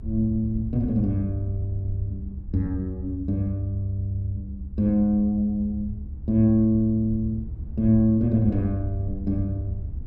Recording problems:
rumble; below 76 Hz, SNR 11 dB

